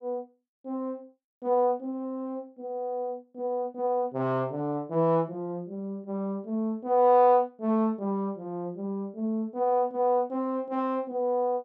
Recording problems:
none

